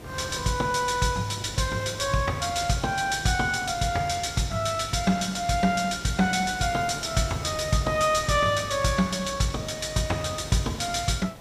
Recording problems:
background hiss; SNR 17 dB

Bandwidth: 15 kHz